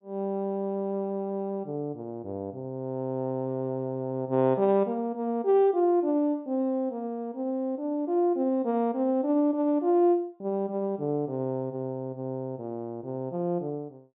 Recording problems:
treble missing; nothing above 4 kHz

